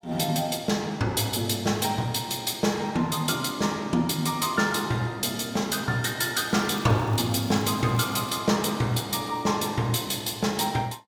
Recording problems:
crackle; from 6.5 to 8.5 s; loose cable, SNR 22 dB

